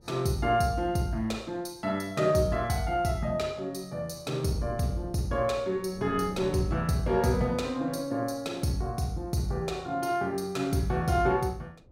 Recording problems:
wind on the microphone; below 380 Hz, SNR 20 dB

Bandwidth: 16 kHz